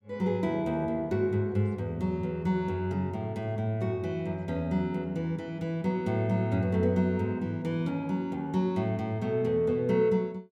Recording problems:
none

